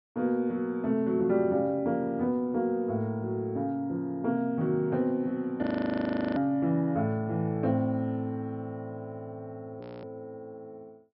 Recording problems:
treble cut off; nothing above 5.3 kHz
audio freezing; at 5.5 s for 0.5 s and at 10 s

